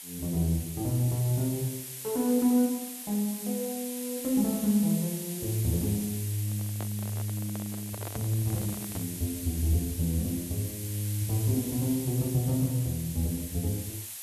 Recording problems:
hiss; SNR 8 dB
microphone handling noise; from 6.5 to 9 s; peak -7 dB vs average level

